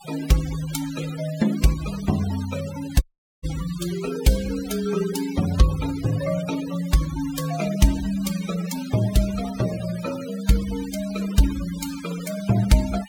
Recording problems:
noise reduction artefacts; signal-to-artefact ratio 13 dB
audio cutting out; at 3 s

